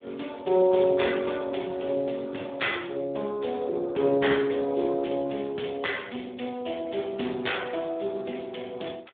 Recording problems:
telephone audio; 170 Hz to 3.7 kHz, Speex

